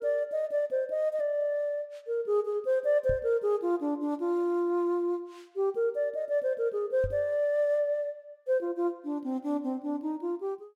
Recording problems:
microphone thump; at 3 s and at 7 s; peak -3 dB vs average level

